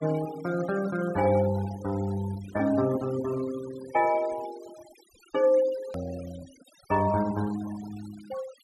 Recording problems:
denoising artefacts; signal-to-artefact ratio 18 dB
click at an edit; at 6 s

